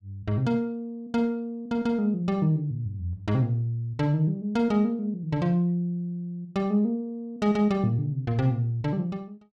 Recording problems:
none

